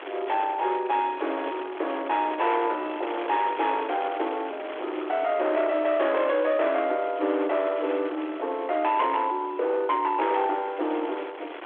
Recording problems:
telephone audio; 280 Hz to 3.6 kHz, G.726
distortion; hard clipping, signal-to-distortion ratio 12 dB
wind on the microphone; below 2.1 kHz, SNR 13 dB

